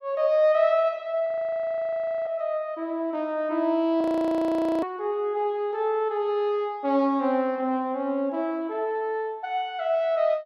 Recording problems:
audio freezing; at 1.5 s for 1 s and at 4 s for 1 s

